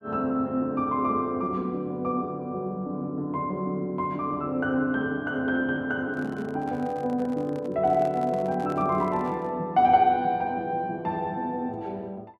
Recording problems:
handling noise; from 6 to 9.5 s; peak -11 dB vs average level

